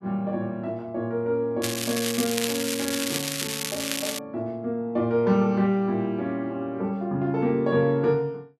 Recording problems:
crackling; from 1.5 to 4 s; loose cable, SNR 2 dB

